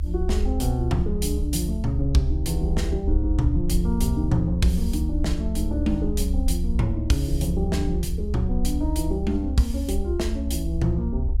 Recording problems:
rumble; below 68 Hz, SNR 1 dB

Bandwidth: 16 kHz